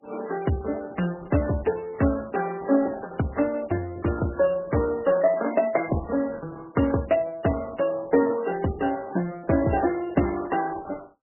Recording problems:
codec artefacts; Opus, then MP3, log-spectral distance 4 dB, nothing above 2.9 kHz

